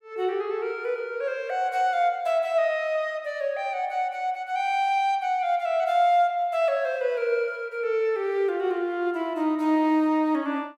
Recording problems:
none

